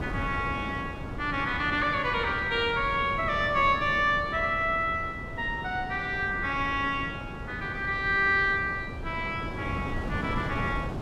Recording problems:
wind noise; below 430 Hz, SNR 10 dB

